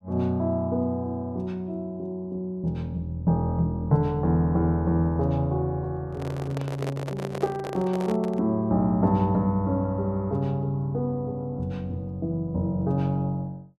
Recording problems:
handling noise; from 6 to 8.5 s; peak -3 dB vs average level

